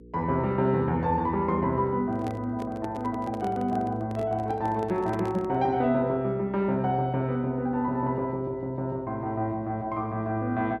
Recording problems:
hum; 60 Hz, harmonics up to 480 Hz, SNR 21 dB
microphone handling noise; from 2 to 5.5 s; peak -6 dB vs average level

